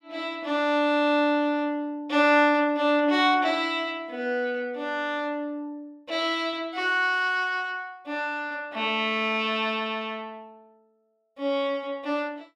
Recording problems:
none

